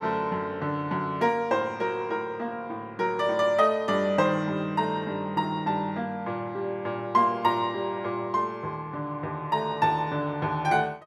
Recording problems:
none

